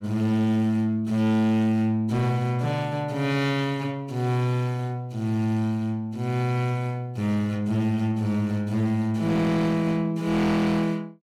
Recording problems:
distorted audio; hard clipping, signal-to-distortion ratio 12 dB

